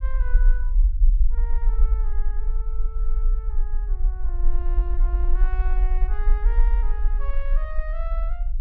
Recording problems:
low-frequency rumble; below 42 Hz, SNR -16 dB

